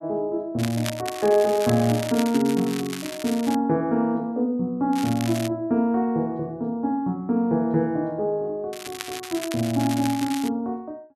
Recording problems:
crackling; from 0.5 to 3.5 s, at 5 s and from 8.5 to 10 s; loose cable, SNR 11 dB

